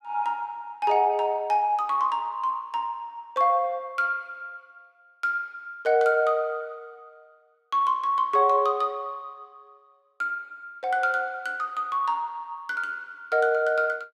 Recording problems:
none

